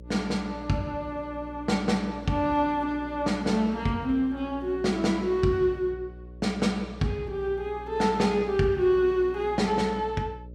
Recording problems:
hum; 60 Hz, harmonics up to 600 Hz, SNR 18 dB

